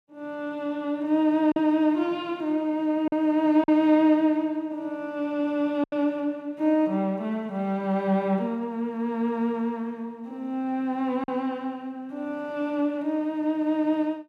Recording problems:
lost packets; 1.7% of the sound replaced, filled with silence

